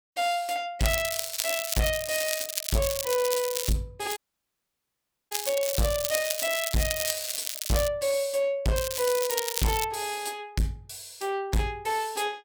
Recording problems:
distorted audio; soft clipping, signal-to-distortion ratio 6 dB
crackle; from 1 to 3.5 s, from 4 to 8 s and from 9 to 10 s; loose cable, SNR 2 dB
dropout; at 4 s for 1 s

